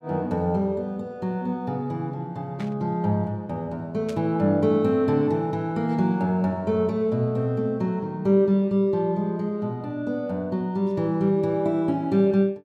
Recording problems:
static burst; at 2.5 s and at 4 s; peak -12 dB vs average level

